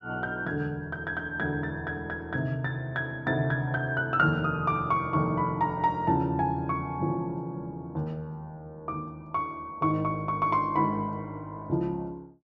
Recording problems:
treble missing; nothing above 8 kHz

